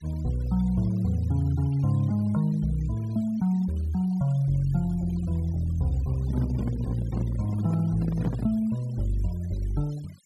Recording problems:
noise reduction artefacts; signal-to-artefact ratio 23 dB
microphone handling noise; from 6 to 8.5 s; peak 0 dB vs average level

